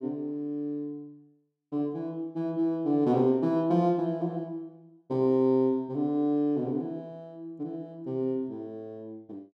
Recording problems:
none

